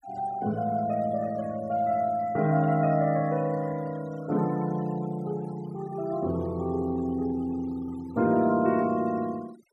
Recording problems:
denoising artefacts; signal-to-artefact ratio 22 dB

